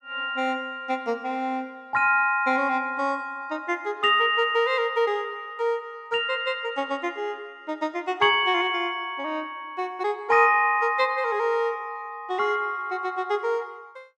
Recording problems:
none

